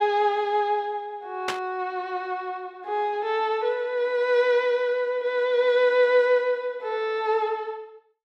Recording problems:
static burst; at 1.5 s; peak 0 dB vs average level

